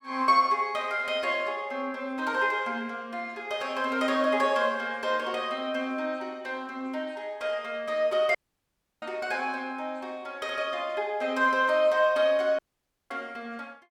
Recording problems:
audio cutting out; at 8.5 s for 0.5 s and at 13 s for 0.5 s

